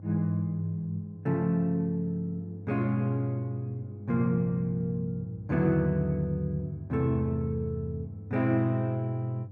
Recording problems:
hum; 50 Hz, harmonics up to 500 Hz, SNR 14 dB

